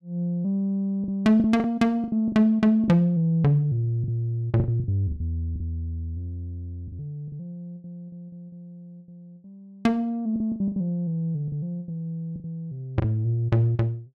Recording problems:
packet loss; 11% of the sound replaced, filled with the last packet

